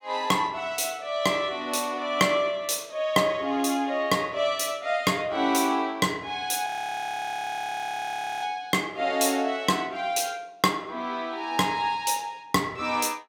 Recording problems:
frozen audio; at 6.5 s for 2 s

